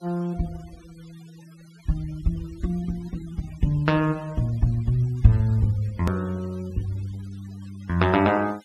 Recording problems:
denoising artefacts; signal-to-artefact ratio 26 dB
hard cut with a click; at 6 s

